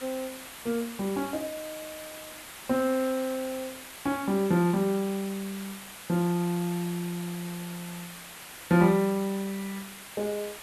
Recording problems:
background hiss; SNR 12 dB

